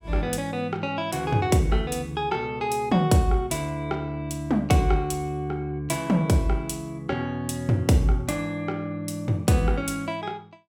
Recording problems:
none

